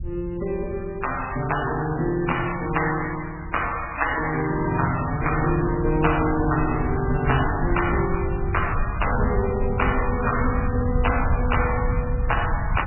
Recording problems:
codec artefacts; MP3, log-spectral distance 12 dB, nothing above 2.9 kHz
low-frequency rumble; below 100 Hz, SNR 5 dB

